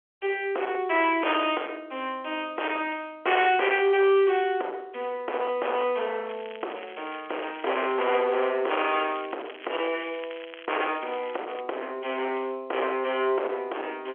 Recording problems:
phone line; 340 Hz to 3.3 kHz, G.711
distortion; hard clipping, signal-to-distortion ratio 8 dB
crackling; from 6.5 to 8.5 s and from 9 to 12 s; loose cable, SNR 18 dB

